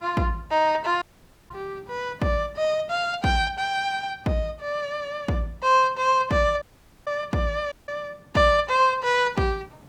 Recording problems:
hiss; slope -7 dB per octave, SNR 28 dB
dropout; at 1 s, at 6.5 s and at 7.5 s

